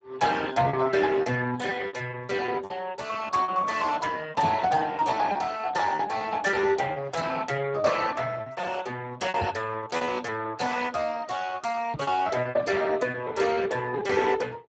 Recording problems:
lossy compression; Speex, log-spectral distance 5 dB, nothing above 7.6 kHz
lost packets; 15% of the sound replaced, filled with repeated pitch periods
knock on the microphone; at 4.5 s, at 9.5 s and at 12 s; peak -2 dB vs average level

